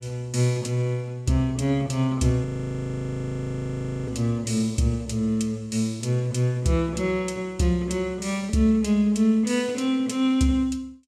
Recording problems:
audio freezing; at 2.5 s for 1.5 s

